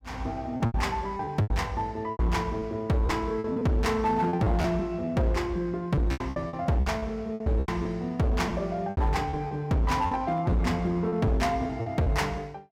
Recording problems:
distorted audio; hard clipping, signal-to-distortion ratio 11 dB
packet loss; 11% of the sound replaced, filled with repeated pitch periods

